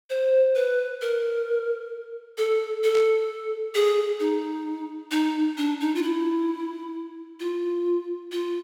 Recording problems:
static burst; at 3 s; peak -8 dB vs average level

